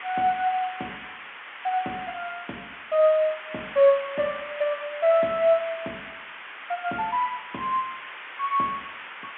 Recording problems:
telephone audio; 280 Hz to 3.3 kHz, G.711
background hiss; SNR 13 dB

